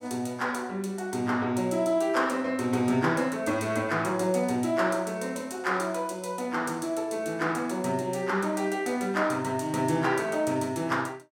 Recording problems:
none

